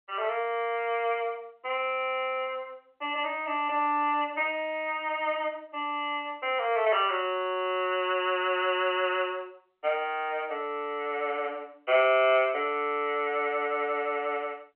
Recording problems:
telephone audio; 260 Hz to 3.1 kHz, G.711

